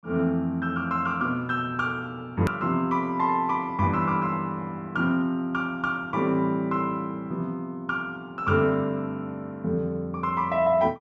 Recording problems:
click at an edit; at 2.5 s

